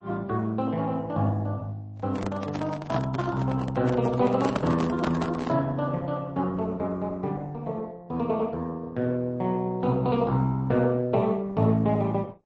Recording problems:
lossy codec; Opus, then MP3, log-spectral distance 2 dB, nothing above 7.8 kHz
microphone handling noise; from 2 to 5.5 s; peak +2 dB vs average level

